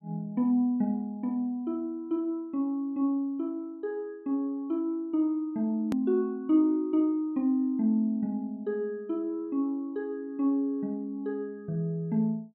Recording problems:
edit click; at 6 s

